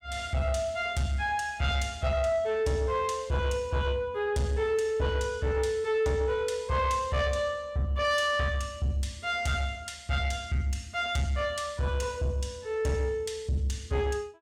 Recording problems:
distorted audio; soft clipping, signal-to-distortion ratio 12 dB

